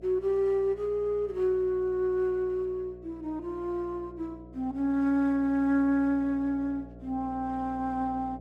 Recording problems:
electrical hum; 60 Hz, harmonics up to 720 Hz, SNR 20 dB

